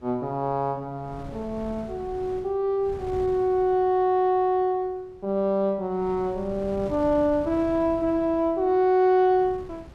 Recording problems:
wind noise; below 310 Hz, SNR 18 dB

